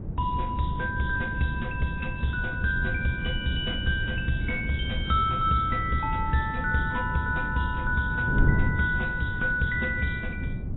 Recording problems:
lossy codec; AAC, log-spectral distance 3 dB, nothing above 3.2 kHz
wind noise; below 160 Hz, SNR 4 dB

